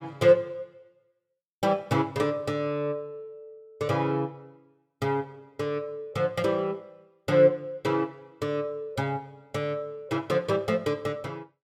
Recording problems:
none

